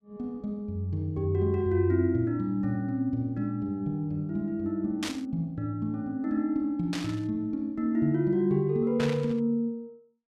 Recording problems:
static burst; at 5 s, at 7 s and at 9 s; peak -2 dB vs average level

